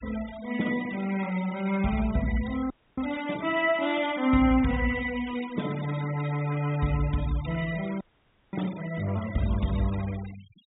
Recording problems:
treble cut off; nothing above 4 kHz
noise reduction artefacts; signal-to-artefact ratio 16 dB
audio freezing; at 2.5 s and at 8 s for 0.5 s

